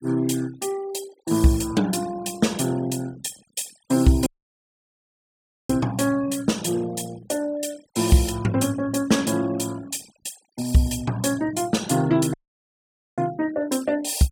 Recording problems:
denoising artefacts; signal-to-artefact ratio 21 dB
audio cutting out; at 4.5 s for 1.5 s and at 12 s for 1 s

